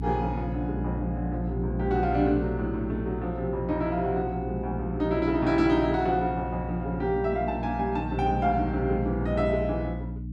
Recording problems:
hum; 60 Hz, harmonics up to 300 Hz, SNR 5 dB

